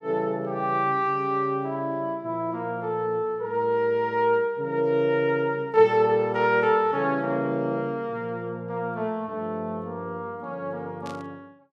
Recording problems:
static burst; at 11 s; peak -14 dB vs average level

